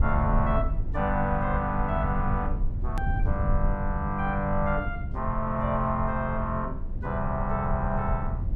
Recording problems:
low-frequency rumble; below 86 Hz, SNR 3 dB
click at an edit; at 3 s

